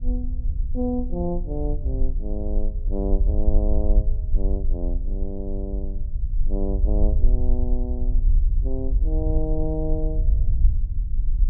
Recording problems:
low-frequency rumble; below 52 Hz, SNR -6 dB

